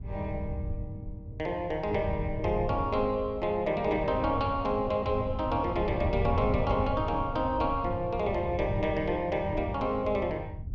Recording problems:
rumble; below 110 Hz, SNR 7 dB

